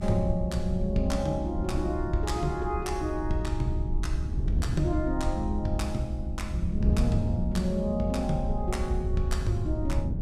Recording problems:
low-frequency rumble; below 76 Hz, SNR 2 dB
wind on the microphone; below 160 Hz, SNR 7 dB

